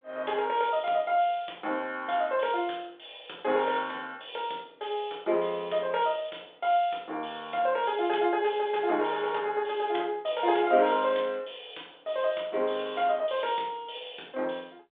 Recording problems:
phone line; 300 Hz to 3.6 kHz, G.726

